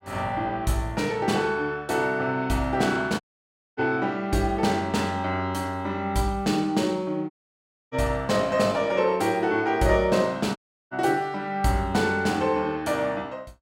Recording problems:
dropout; at 3 s for 0.5 s, at 7.5 s for 0.5 s and at 11 s

